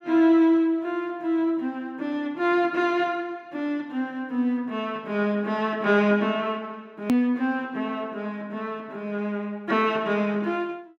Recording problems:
hard cut with a click; at 7 s

